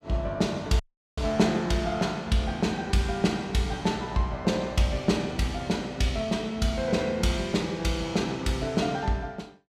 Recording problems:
dropout; at 1 s

